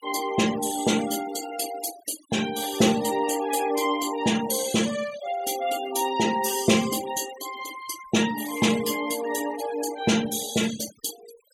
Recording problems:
denoising artefacts; signal-to-artefact ratio 13 dB

